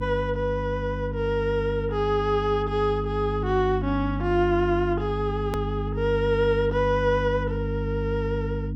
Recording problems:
hum; 50 Hz, harmonics up to 300 Hz, SNR 5 dB
edit click; at 5.5 s

